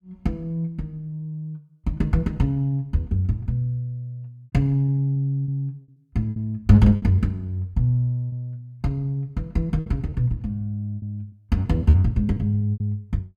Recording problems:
lost packets; 6% of the sound replaced, filled with repeated pitch periods

